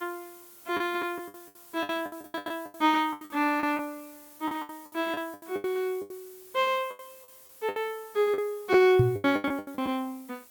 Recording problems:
background hiss; slope -1 dB per octave, SNR 21 dB
packet loss; 18% of the sound replaced, filled with the last packet
microphone bump; at 9 s; peak +8 dB vs average level

